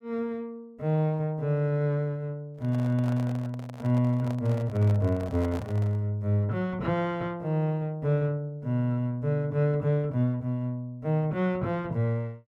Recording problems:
microphone handling noise; from 2.5 to 6 s; peak -8 dB vs average level

